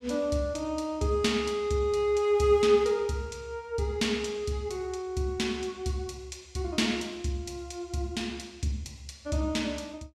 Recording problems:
none

